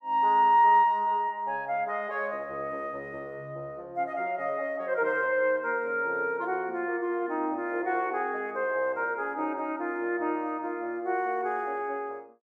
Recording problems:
none

